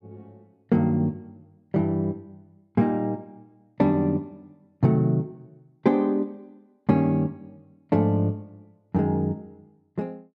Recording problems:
none

